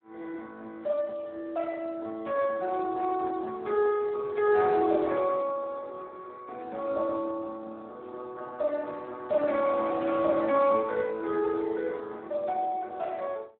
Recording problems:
phone line; 300 Hz to 2.6 kHz, Speex

